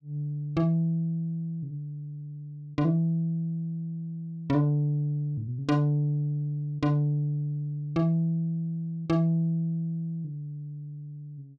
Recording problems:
none

